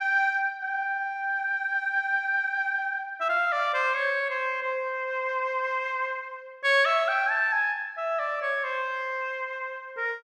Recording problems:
none

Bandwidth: 14 kHz